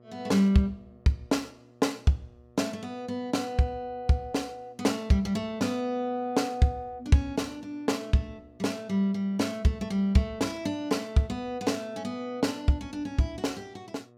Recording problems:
hum; 60 Hz, harmonics up to 1.3 kHz, SNR 29 dB

